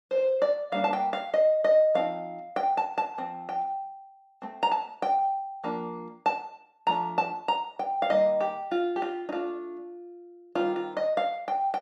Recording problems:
none

